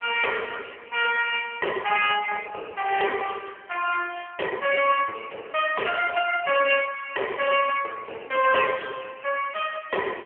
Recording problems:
phone line; 340 Hz to 3.1 kHz, AMR-NB

